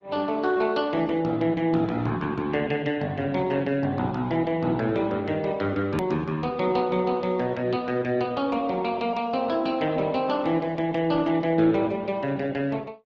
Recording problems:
lossy compression; Speex, then Opus, log-spectral distance 3 dB, nothing above 13.1 kHz
hard cut with a click; at 6 s

